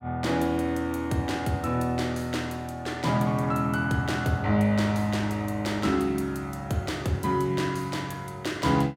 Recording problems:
none

